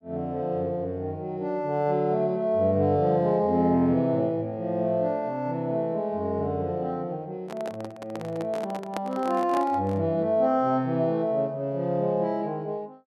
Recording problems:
handling noise; from 7.5 to 10 s; peak -2 dB vs average level

